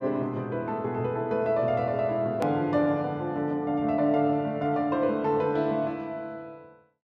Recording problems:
click at an edit; at 2.5 s

